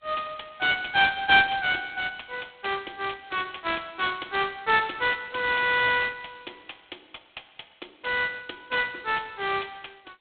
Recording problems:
phone line; 280 Hz to 3.9 kHz, G.726

